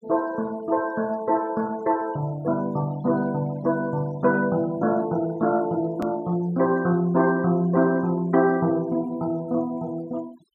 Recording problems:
denoising artefacts; signal-to-artefact ratio 24 dB
edit click; at 6 s

